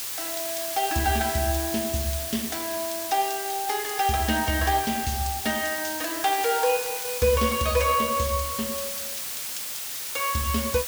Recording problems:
hiss; slope +2 dB per octave, SNR 4 dB

